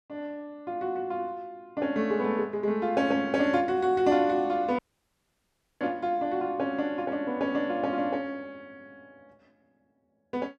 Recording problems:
dropout; at 5 s for 1 s

